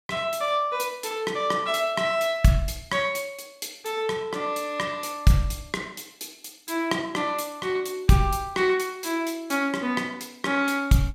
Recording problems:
none

